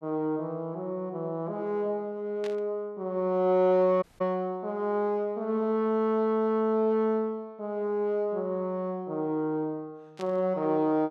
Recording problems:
burst of static; at 2.5 s and at 10 s; peak -11 dB vs average level
audio cutting out; at 4 s

